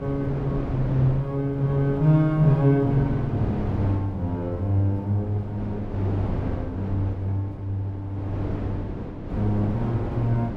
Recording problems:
wind noise; below 380 Hz, SNR 8 dB

